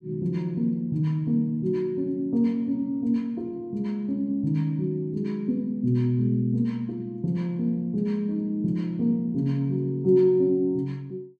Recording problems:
none

